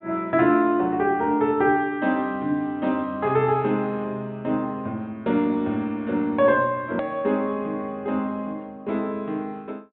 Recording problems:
low-pass filter; nothing above 4 kHz
click at an edit; at 7 s

